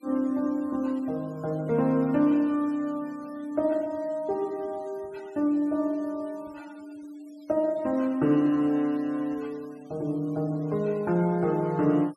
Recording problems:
noise reduction artefacts; signal-to-artefact ratio 28 dB

